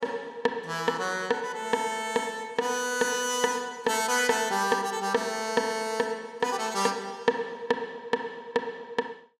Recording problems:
none

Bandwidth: 15 kHz